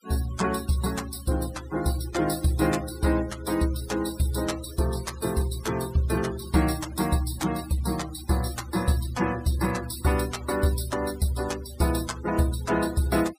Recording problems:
denoising artefacts; signal-to-artefact ratio 16 dB

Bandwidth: 15 kHz